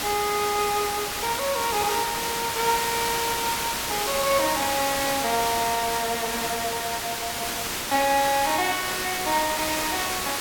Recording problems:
background hiss; slope -1 dB per octave, SNR 1 dB

